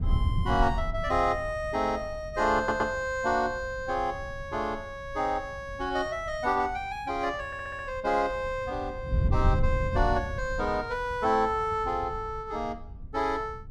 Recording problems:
wind noise; below 100 Hz, SNR 6 dB
audio stuttering; at 2.5 s and at 7.5 s

